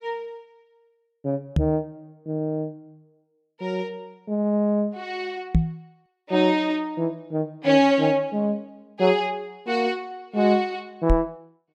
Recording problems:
microphone bump; at 1.5 s, at 5.5 s and at 11 s; peak +8 dB vs average level

